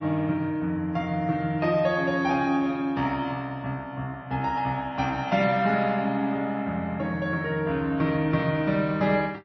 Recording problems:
lossy compression; MP3, log-spectral distance 2 dB, nothing above 5.2 kHz

